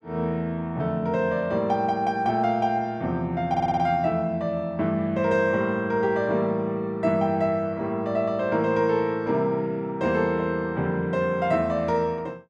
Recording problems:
audio stuttering; at 3.5 s

